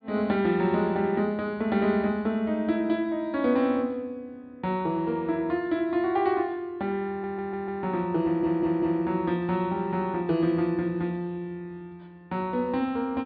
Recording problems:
treble cut off; nothing above 4.9 kHz
stutter; at 7 s and at 8 s

